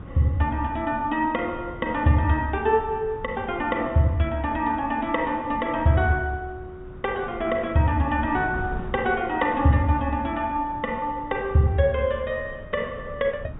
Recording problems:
treble cut off; nothing above 4 kHz
wind noise; below 210 Hz, SNR 16 dB

